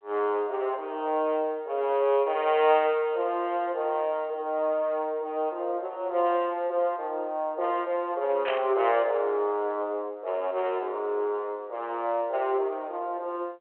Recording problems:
telephone audio; 340 Hz to 3.6 kHz, G.726
static burst; at 8.5 s; peak 0 dB vs average level

